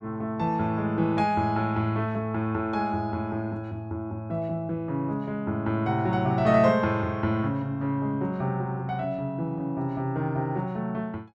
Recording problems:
none

